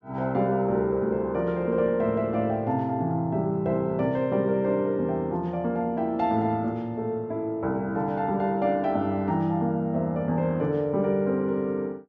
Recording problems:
treble cut off; nothing above 8 kHz

